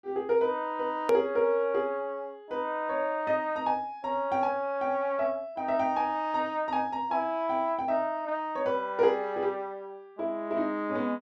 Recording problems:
click at an edit; at 1 s

